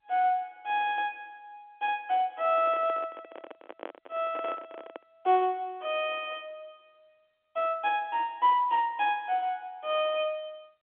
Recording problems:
phone line; 240 Hz to 3.7 kHz, G.711
microphone handling noise; from 2.5 to 5 s; peak -7 dB vs average level

